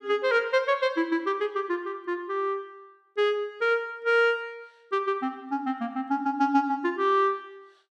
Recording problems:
none

